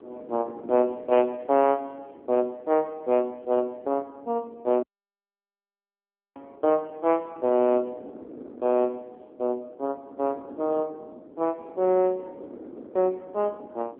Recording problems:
telephone audio; 220 Hz to 3.3 kHz, AMR-NB
wind noise; below 480 Hz, SNR 19 dB
dropout; at 5 s for 1.5 s

